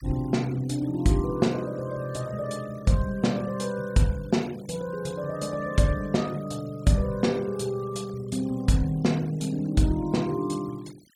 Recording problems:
noise reduction artefacts; signal-to-artefact ratio 23 dB

